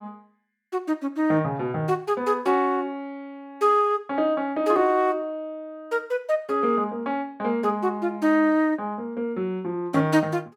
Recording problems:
none

